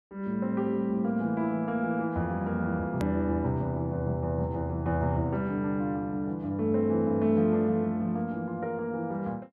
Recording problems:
hard cut with a click; at 3 s

